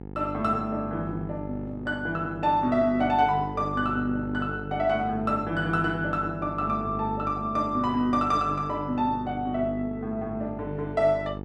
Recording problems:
electrical hum; 50 Hz, harmonics up to 950 Hz, SNR 10 dB

